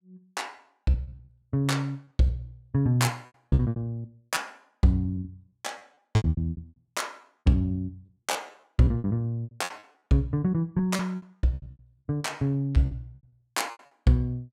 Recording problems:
packet loss; 15% of the sound replaced, filled with repeated pitch periods

